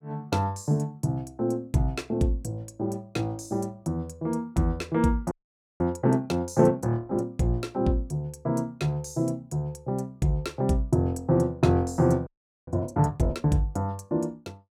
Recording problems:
frozen audio; at 5.5 s and at 12 s

